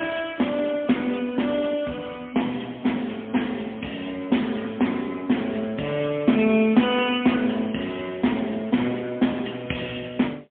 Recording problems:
phone line; 130 Hz to 3.4 kHz, AMR-NB, then MP3

